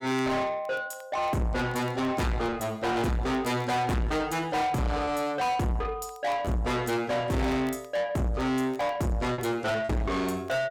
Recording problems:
distortion; soft clipping, signal-to-distortion ratio 6 dB
crackling; vinyl, SNR 29 dB
packet loss; 1.8% of the sound replaced, filled with repeated pitch periods

